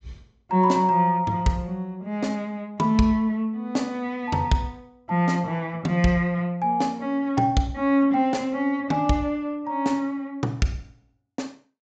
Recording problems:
treble cut off; nothing above 8 kHz

